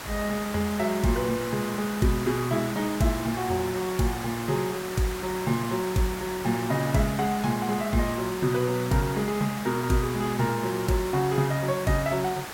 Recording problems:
hiss; SNR 9 dB

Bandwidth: 16.5 kHz